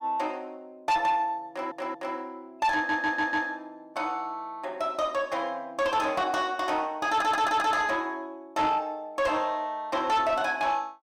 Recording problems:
distorted audio; soft clipping, signal-to-distortion ratio 11 dB
audio stuttering; at 1.5 s, at 3 s and at 7 s

